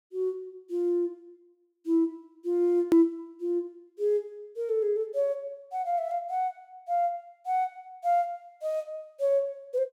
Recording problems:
click at an edit; at 3 s

